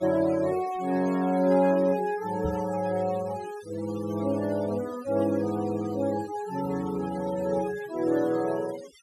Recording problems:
denoising artefacts; signal-to-artefact ratio 17 dB
knock on the microphone; at 2.5 s; peak -1 dB vs average level

